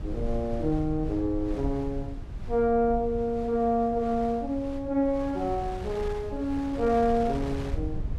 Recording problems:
rumble; below 86 Hz, SNR 11 dB
wind on the microphone; below 1.9 kHz, SNR 19 dB

